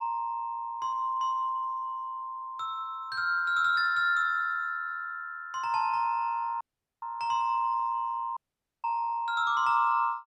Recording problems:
audio cutting out; at 6.5 s and at 8.5 s

